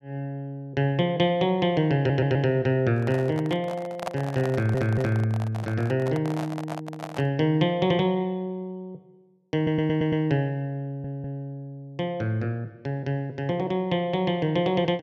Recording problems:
audio stuttering; 4 times, first at 2 s
handling noise; from 3 to 7.5 s; peak -1 dB vs average level

